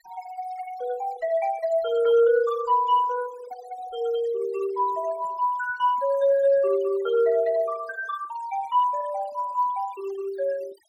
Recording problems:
denoising artefacts; signal-to-artefact ratio 20 dB

